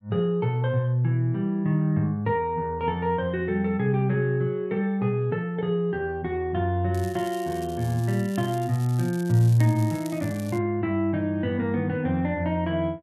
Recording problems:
crackle; from 7 to 11 s; loose cable, SNR 20 dB

